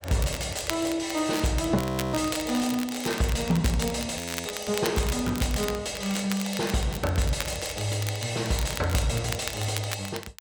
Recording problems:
distorted audio; soft clipping, signal-to-distortion ratio 11 dB
crackling; vinyl, SNR 10 dB
audio freezing; at 2 s and at 4 s

